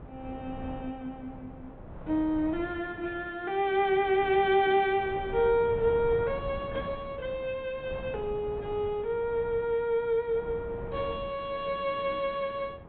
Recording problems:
treble missing; nothing above 4 kHz
wind noise; below 470 Hz, SNR 15 dB

